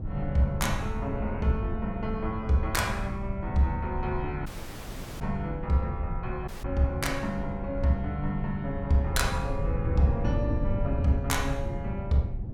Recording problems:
low-frequency rumble; below 98 Hz, SNR 10 dB
wind noise; below 130 Hz, SNR 6 dB
dropout; at 4.5 s for 1 s and at 6.5 s

